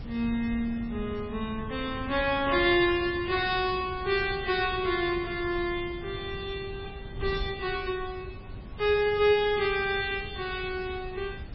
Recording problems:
codec artefacts; MP3, log-spectral distance 7 dB, nothing above 4.5 kHz
hiss; SNR 27 dB
wind on the microphone; below 150 Hz, SNR 14 dB

